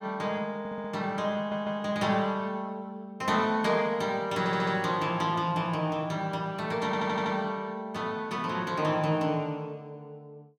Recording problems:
audio stuttering; 4 times, first at 0.5 s

